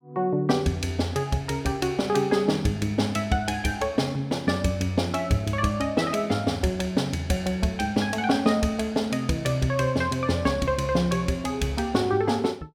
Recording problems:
none

